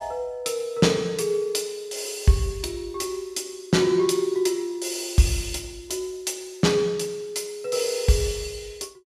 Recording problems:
none

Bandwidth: 14.5 kHz